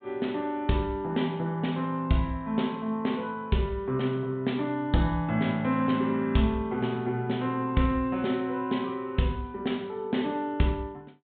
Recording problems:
treble cut off; nothing above 4 kHz

